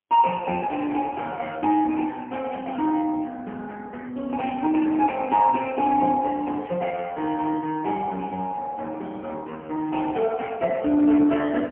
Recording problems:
phone line; 220 Hz to 3.1 kHz, AMR-NB, then MP3

